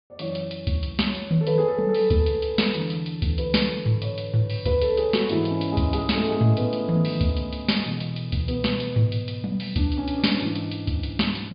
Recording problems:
low-pass filter; nothing above 4.9 kHz

